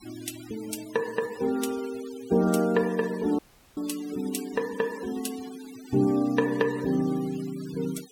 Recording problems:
noise reduction artefacts; signal-to-artefact ratio 18 dB
audio cutting out; at 3.5 s

